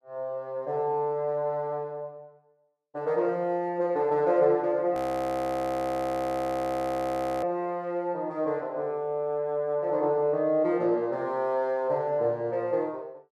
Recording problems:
frozen audio; at 5 s for 2.5 s

